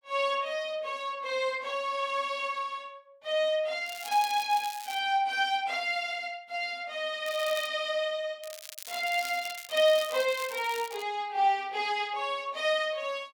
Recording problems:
crackle; from 4 to 5 s, at 7.5 s and from 8.5 to 11 s; loose cable, SNR 14 dB

